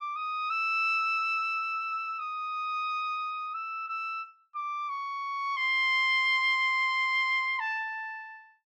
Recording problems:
none

